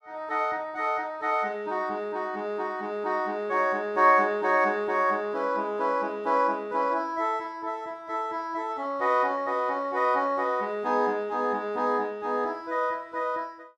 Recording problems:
none

